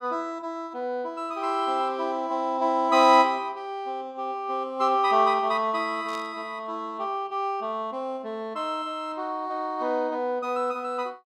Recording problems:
burst of static; at 6 s; peak -12 dB vs average level

